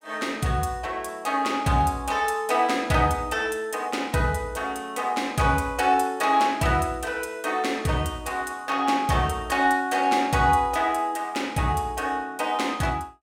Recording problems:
none

